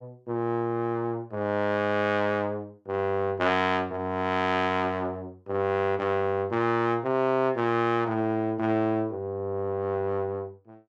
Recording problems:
none

